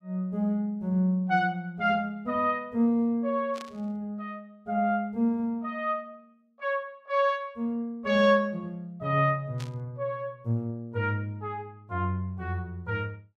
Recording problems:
static burst; at 3.5 s and at 9.5 s; peak -10 dB vs average level

